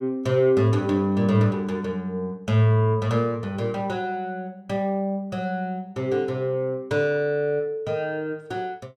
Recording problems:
none

